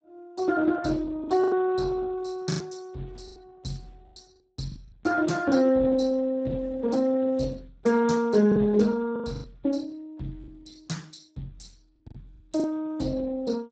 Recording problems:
lossy compression; Speex, log-spectral distance 3 dB, nothing above 7.6 kHz
lost packets; 7% of the sound replaced, filled with the last packet

